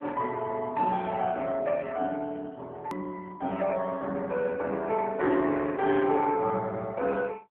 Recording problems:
phone line; 220 Hz to 3.6 kHz, AMR-NB
hard cut with a click; at 3 s

